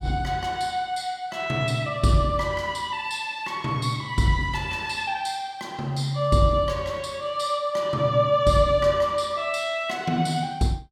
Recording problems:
none

